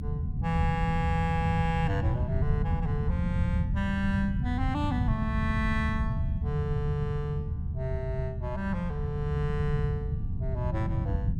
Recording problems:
low-frequency rumble; below 140 Hz, SNR -1 dB

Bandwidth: 16 kHz